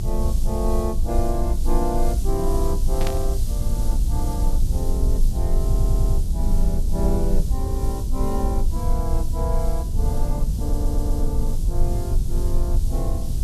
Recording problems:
hiss; SNR 11 dB
rumble; below 56 Hz, strongest tone 22 Hz, SNR -6 dB
burst of static; at 3 s; peak +2 dB vs average level
stutter; at 5.5 s and at 11 s

